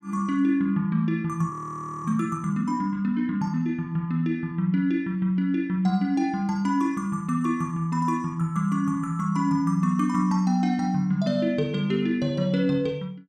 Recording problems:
audio freezing; at 1.5 s for 0.5 s

